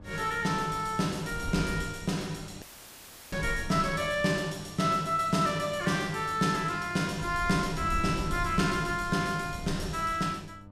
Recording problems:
electrical hum; 50 Hz, harmonics up to 1.2 kHz, SNR 21 dB
wind noise; below 120 Hz, SNR 13 dB
audio cutting out; at 2.5 s for 0.5 s

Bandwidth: 15 kHz